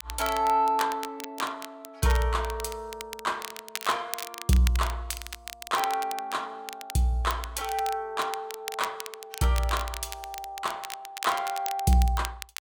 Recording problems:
crackling; vinyl, SNR 11 dB

